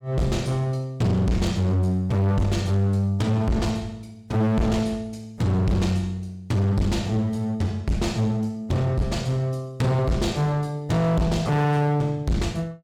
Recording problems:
distorted audio; hard clipping, uneven, signal-to-distortion ratio 5 dB

